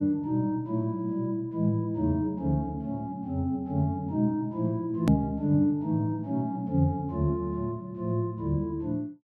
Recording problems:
edit click; at 5 s

